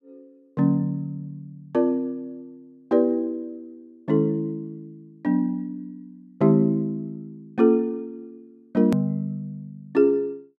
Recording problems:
click at an edit; at 9 s

